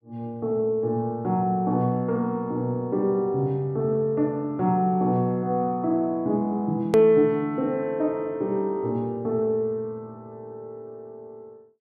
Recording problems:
click at an edit; at 7 s

